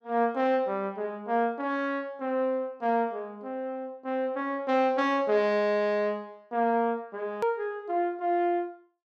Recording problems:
click at an edit; at 7.5 s

